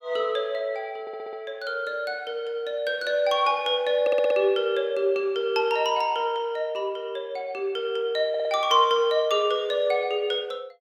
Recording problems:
audio stuttering; at 1 s, at 4 s and at 8.5 s

